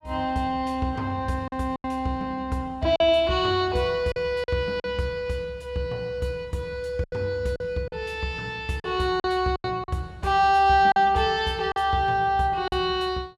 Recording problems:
lost packets; 6% of the sound replaced, filled with silence

